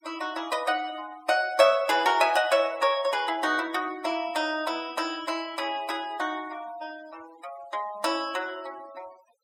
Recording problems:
noise reduction artefacts; signal-to-artefact ratio 20 dB

